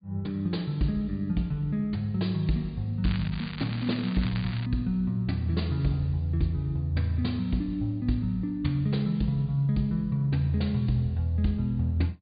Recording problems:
treble missing; nothing above 4.8 kHz
crackle; from 3 to 4.5 s; loose cable, SNR 13 dB

